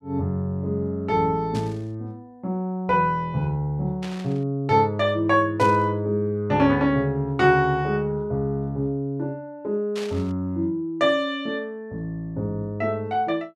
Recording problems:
burst of static; 4 times, first at 1.5 s; peak -8 dB vs average level

